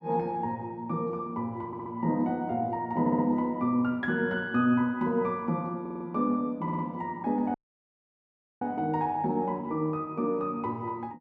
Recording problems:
audio stuttering; 4 times, first at 1.5 s
dropout; at 7.5 s for 1 s

